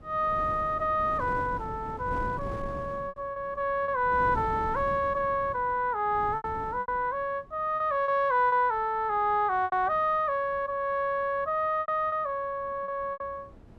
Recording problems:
wind on the microphone; below 340 Hz, SNR 14 dB
lost packets; 6% of the sound replaced, filled with repeated pitch periods

